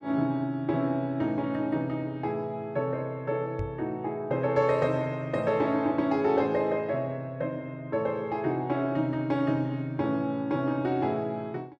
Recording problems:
microphone bump; at 3.5 s; peak -1 dB vs average level

